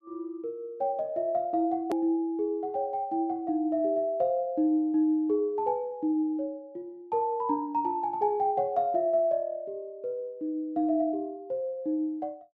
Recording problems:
hard cut with a click; at 2 s

